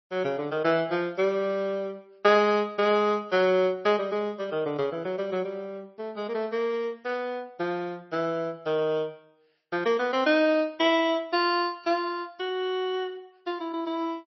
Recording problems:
codec artefacts; MP3, log-spectral distance 2 dB, nothing above 5.8 kHz

